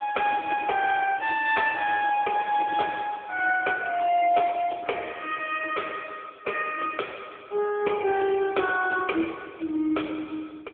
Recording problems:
phone line; 280 Hz to 3.4 kHz, AMR-NB

